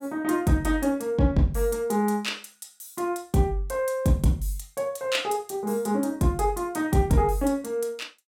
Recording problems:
none

